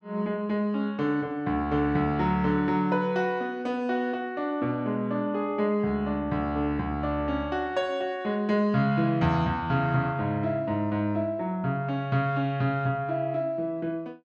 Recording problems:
none

